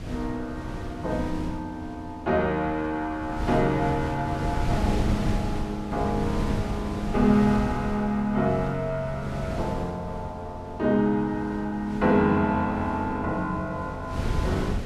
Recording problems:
wind noise; below 250 Hz, SNR 7 dB

